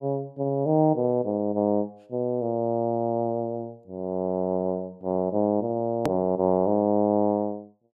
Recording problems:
hard cut with a click; at 6 s

